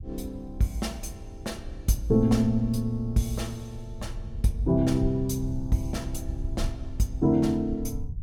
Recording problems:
low-frequency rumble; below 82 Hz, SNR 11 dB

